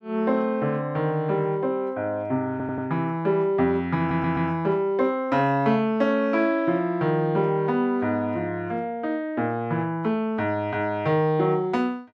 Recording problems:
audio stuttering; at 2.5 s and at 4 s

